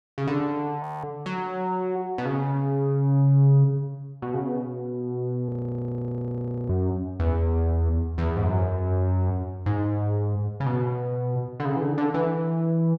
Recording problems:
audio freezing; at 1 s and at 5.5 s for 1 s

